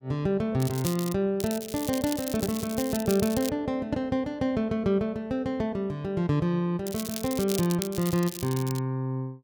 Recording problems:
crackling; at 0.5 s, from 1.5 to 3.5 s and from 7 to 9 s; loose cable, SNR 9 dB

